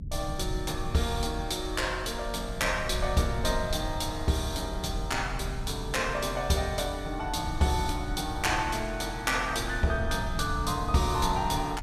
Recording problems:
low-frequency rumble; below 96 Hz, SNR 8 dB

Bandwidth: 15 kHz